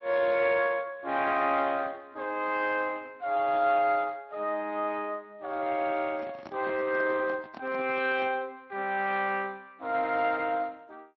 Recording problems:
codec artefacts; MP3, then Speex, log-spectral distance 3 dB
handling noise; from 6 to 8.5 s; peak -10 dB vs average level

